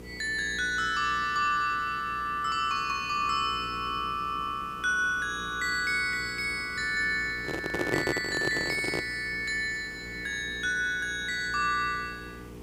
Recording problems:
hum; 60 Hz, harmonics up to 480 Hz, SNR 18 dB
background hiss; slope -5 dB per octave, SNR 21 dB
microphone handling noise; from 7.5 to 9 s; peak +4 dB vs average level

